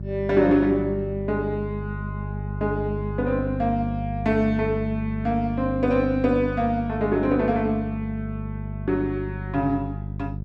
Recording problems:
hum; 50 Hz, harmonics up to 400 Hz, SNR 7 dB

